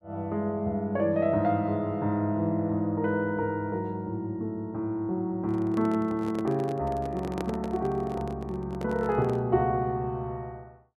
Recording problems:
handling noise; from 5.5 to 9.5 s; peak -2 dB vs average level

